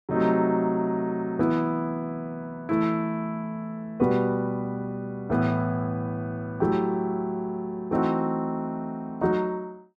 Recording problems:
none

